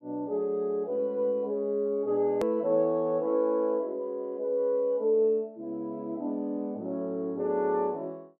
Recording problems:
click at an edit; at 2.5 s

